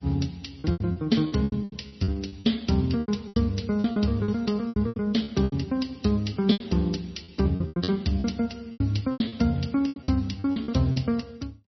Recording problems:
lossy compression; Speex, then MP3, log-spectral distance 4 dB, nothing above 5.8 kHz
lost packets; 17% of the sound replaced, filled with repeated pitch periods

